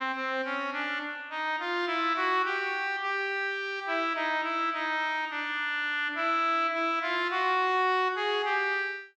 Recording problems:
none

